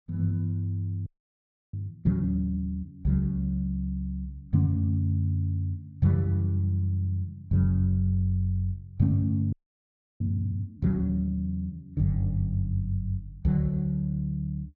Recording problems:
audio freezing; at 1 s for 0.5 s and at 9.5 s for 0.5 s

